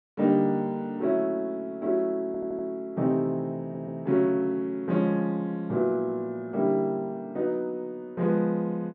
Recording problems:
audio stuttering; at 2.5 s and at 3.5 s

